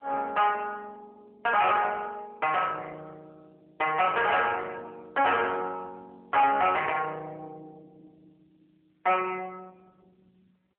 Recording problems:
phone line; 320 Hz to 3 kHz, AMR-NB
distortion; soft clipping, signal-to-distortion ratio 8 dB

